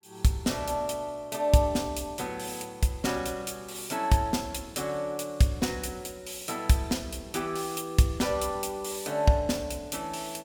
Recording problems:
none

